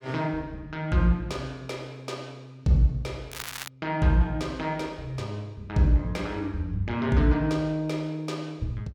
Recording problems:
crackling; at 3.5 s; loose cable, SNR 9 dB

